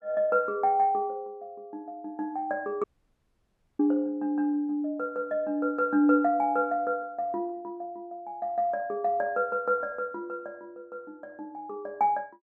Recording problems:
dropout; at 3 s for 1 s

